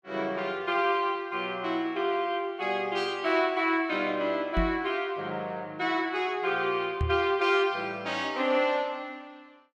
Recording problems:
microphone thump; at 4.5 s and at 7 s; peak +2 dB vs average level

